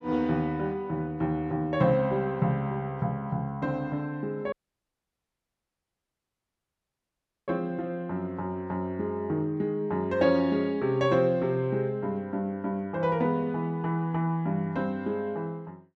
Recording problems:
dropout; at 4.5 s for 3 s

